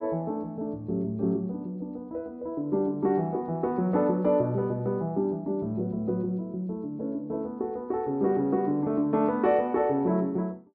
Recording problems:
treble cut off; nothing above 5.5 kHz

